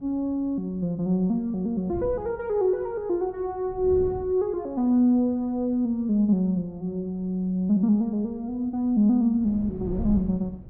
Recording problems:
wind on the microphone; below 180 Hz, SNR 18 dB

